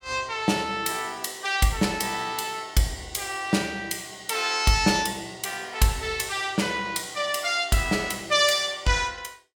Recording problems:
none

